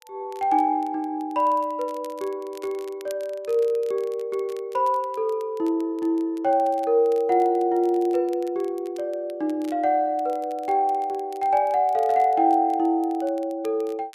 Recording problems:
crackling; vinyl, SNR 28 dB

